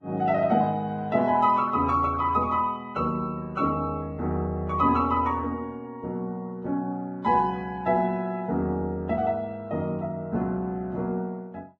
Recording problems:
codec artefacts; Vorbis, log-spectral distance 2 dB

